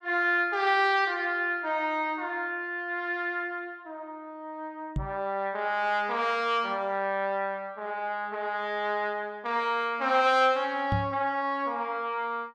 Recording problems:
microphone bump; at 5 s and at 11 s; peak +2 dB vs average level

